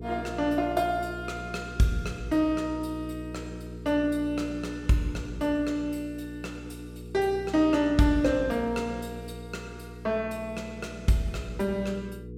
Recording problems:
hum; 60 Hz, harmonics up to 480 Hz, SNR 13 dB

